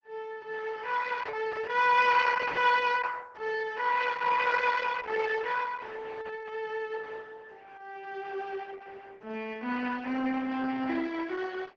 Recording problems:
lossy codec; Opus, log-spectral distance 5 dB

